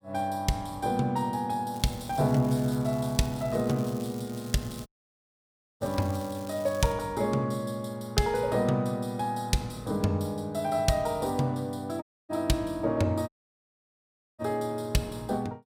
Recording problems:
crackle; from 1.5 to 7 s; loose cable, SNR 19 dB
audio cutting out; at 5 s for 1 s, at 12 s and at 13 s for 1 s

